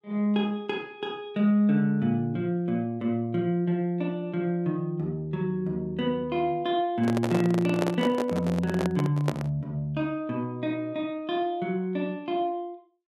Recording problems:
handling noise; from 7 to 9.5 s; peak +2 dB vs average level

